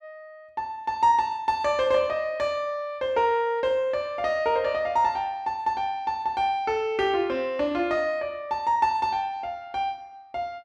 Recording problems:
none

